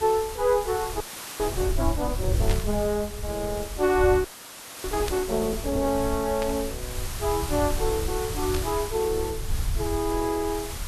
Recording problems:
background hiss; slope -1 dB per octave, SNR 9 dB
rumble; below 88 Hz, SNR 7 dB
audio freezing; at 1 s and at 4.5 s for 0.5 s
burst of static; 4 times, first at 2.5 s; peak -3 dB vs average level

